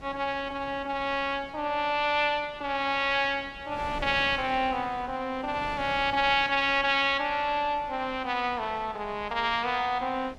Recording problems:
wind on the microphone; below 680 Hz, SNR 19 dB

